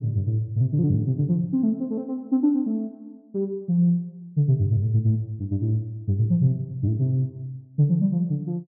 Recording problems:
none

